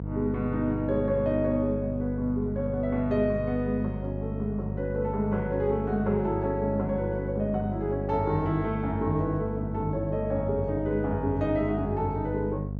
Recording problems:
hum; 50 Hz, harmonics up to 700 Hz, SNR 5 dB

